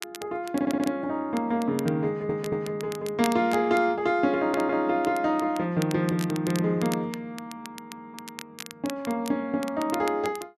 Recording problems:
crackling; vinyl, SNR 16 dB
audio stuttering; 4 times, first at 0.5 s

